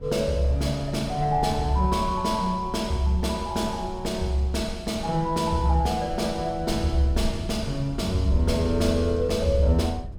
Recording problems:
rumble; below 92 Hz, SNR 12 dB

